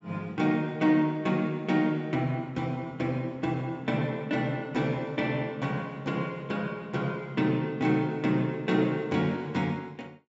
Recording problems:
treble missing; nothing above 8 kHz

